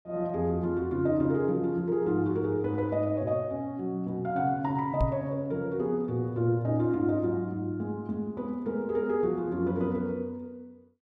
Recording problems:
microphone bump; at 5 s; peak +4 dB vs average level

